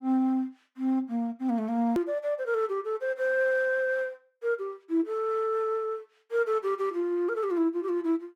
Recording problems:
edit click; at 2 s

